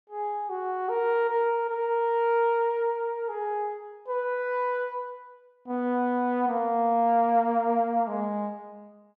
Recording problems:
none

